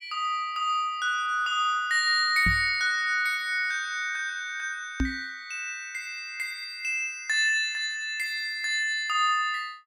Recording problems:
knock on the microphone; at 2.5 s and at 5 s; peak +3 dB vs average level

